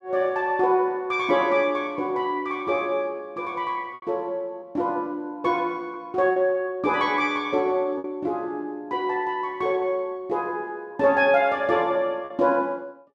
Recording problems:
lost packets; 3% of the sound replaced, filled with repeated pitch periods

